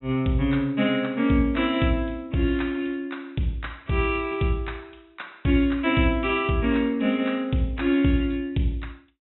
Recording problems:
treble missing; nothing above 3.8 kHz

